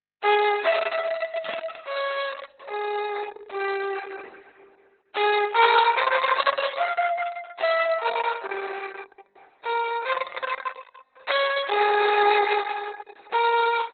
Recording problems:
codec artefacts; MP3, then Opus, log-spectral distance 6 dB, nothing above 4 kHz
burst of static; at 1.5 s; peak -6 dB vs average level

